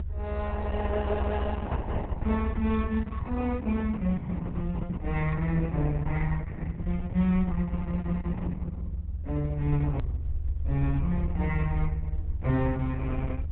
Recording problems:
treble missing; nothing above 4 kHz
lossy compression; Opus, log-spectral distance 3 dB
hum; 50 Hz, harmonics up to 350 Hz, SNR 19 dB
rumble; below 78 Hz, SNR 2 dB
edit click; at 10 s

